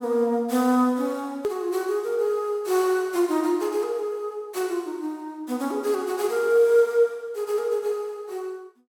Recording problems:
click at an edit; at 1.5 s

